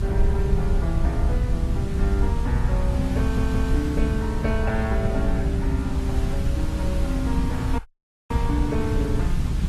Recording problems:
lossy compression; Opus, then Vorbis, log-spectral distance 2 dB
hiss; slope -4 dB per octave, SNR 10 dB
rumble; below 82 Hz, SNR -3 dB
stutter; at 3 s
audio cutting out; at 8 s for 0.5 s

